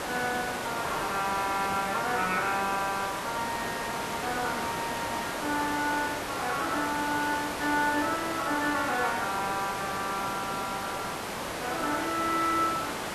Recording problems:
background hiss; SNR 3 dB

